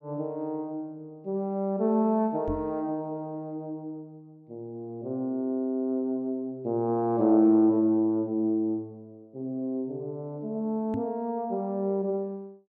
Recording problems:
microphone bump; at 2.5 s and at 11 s; peak -2 dB vs average level

